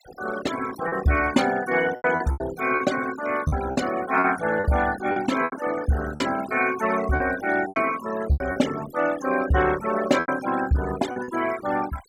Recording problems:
denoising artefacts; signal-to-artefact ratio 12 dB
lost packets; 8% of the sound replaced, filled with repeated pitch periods

